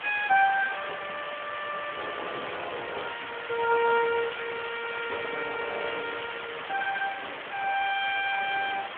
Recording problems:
telephone audio; 300 Hz to 3.4 kHz, Speex
background hiss; SNR 7 dB

